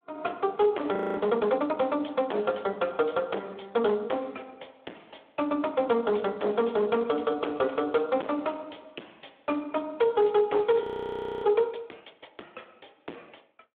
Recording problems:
phone line; 260 Hz to 3.5 kHz, Speex
distortion; hard clipping, signal-to-distortion ratio 10 dB
frozen audio; at 1 s and at 11 s for 0.5 s

